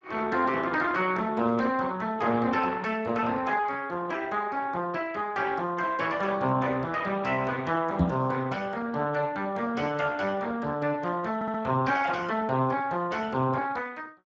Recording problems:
lossy codec; Speex, log-spectral distance 4 dB
microphone thump; at 8 s; peak +7 dB vs average level
audio stuttering; at 11 s

